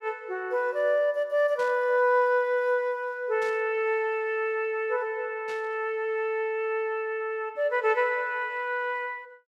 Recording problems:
static burst; at 1.5 s, at 3.5 s and at 5.5 s; peak -14 dB vs average level

